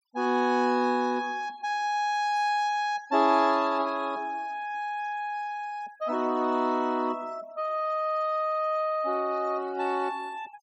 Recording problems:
noise reduction artefacts; signal-to-artefact ratio 25 dB

